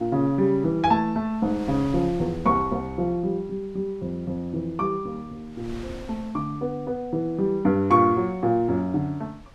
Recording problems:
wind noise; below 460 Hz, SNR 21 dB

